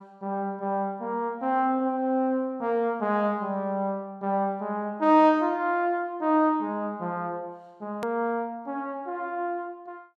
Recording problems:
hard cut with a click; at 8 s

